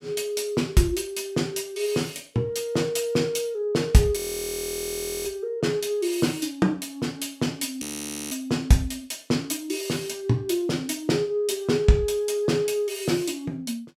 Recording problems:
frozen audio; at 4 s for 1 s and at 8 s

